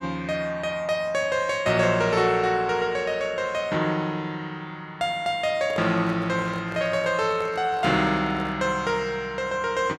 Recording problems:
handling noise; from 5.5 to 8.5 s; peak -8 dB vs average level

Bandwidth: 12.5 kHz